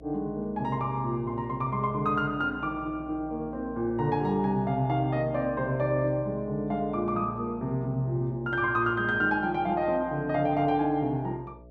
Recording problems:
electrical hum; 60 Hz, harmonics up to 660 Hz, SNR 20 dB

